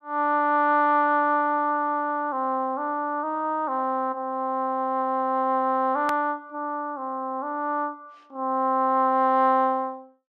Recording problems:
edit click; at 6 s

